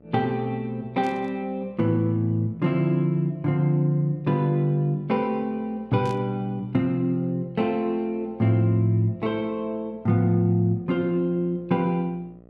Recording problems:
mains hum; 60 Hz, harmonics up to 1.2 kHz, SNR 28 dB
burst of static; at 1 s and at 6 s; peak -15 dB vs average level

